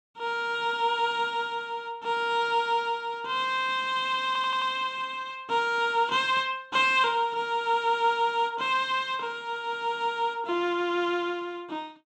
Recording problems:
stutter; at 4.5 s

